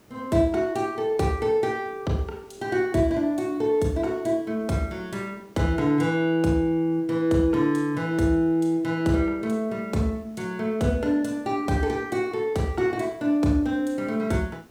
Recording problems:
background hiss; slope -6 dB per octave, SNR 29 dB

